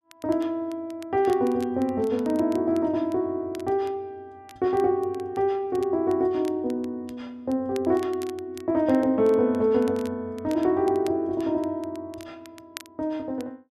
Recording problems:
crackle; vinyl, SNR 25 dB

